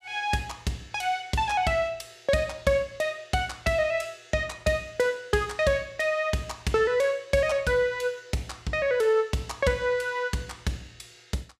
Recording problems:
none

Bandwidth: 15 kHz